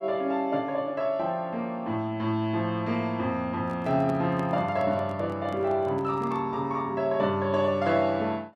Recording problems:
handling noise; from 3.5 to 6.5 s; peak -7 dB vs average level

